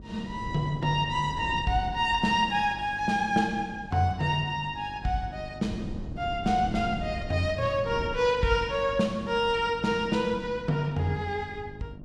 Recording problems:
electrical hum; 50 Hz, harmonics up to 750 Hz, SNR 19 dB
wind noise; below 230 Hz, SNR 15 dB

